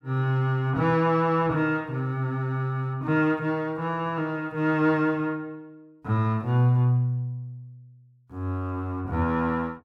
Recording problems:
none

